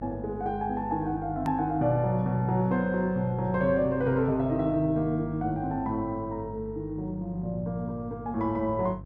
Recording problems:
mains hum; 50 Hz, harmonics up to 700 Hz, SNR 15 dB
hard cut with a click; at 1.5 s

